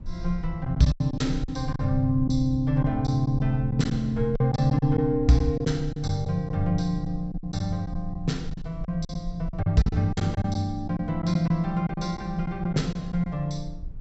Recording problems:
treble cut off; nothing above 7.8 kHz
low-frequency rumble; below 58 Hz, SNR 13 dB
packet loss; 9% of the sound replaced, filled with silence

